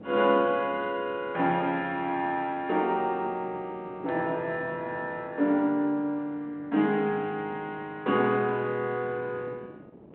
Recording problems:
phone line; 170 Hz to 3.5 kHz, G.726
wind noise; below 470 Hz, SNR 20 dB

